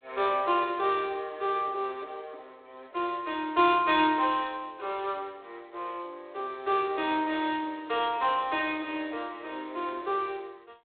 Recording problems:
telephone audio; 280 Hz to 3.7 kHz, G.726

